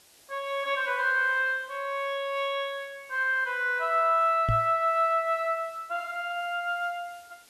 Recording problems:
hiss; SNR 28 dB
microphone thump; at 4.5 s; peak +3 dB vs average level

